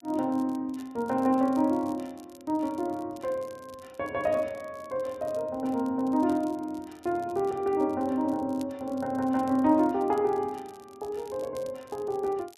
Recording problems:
crackle; vinyl, SNR 27 dB

